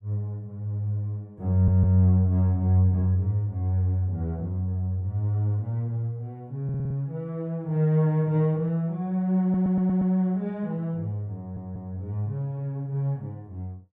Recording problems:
stutter; 4 times, first at 1.5 s

